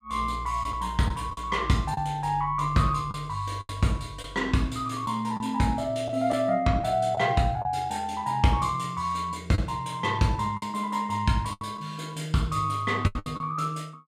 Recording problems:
lost packets; 5% of the sound replaced, filled with the last packet

